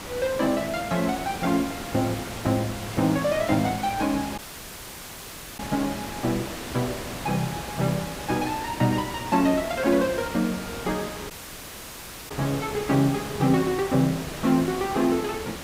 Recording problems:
hiss; slope -4 dB per octave, SNR 9 dB
audio cutting out; at 4.5 s for 1 s and at 11 s for 1 s

